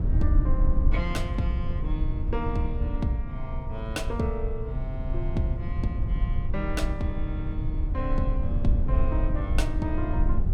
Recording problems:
electrical hum; 60 Hz, harmonics up to 540 Hz, SNR 28 dB
rumble; below 74 Hz, SNR -3 dB

